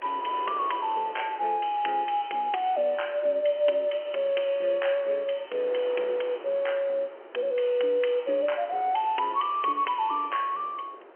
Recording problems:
phone line; 320 Hz to 3.2 kHz, G.711
wind on the microphone; below 1.1 kHz, SNR 19 dB

